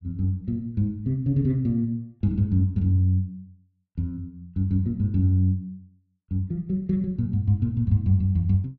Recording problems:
none

